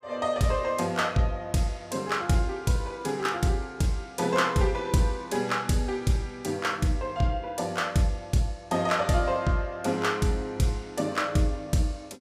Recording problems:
none

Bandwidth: 15.5 kHz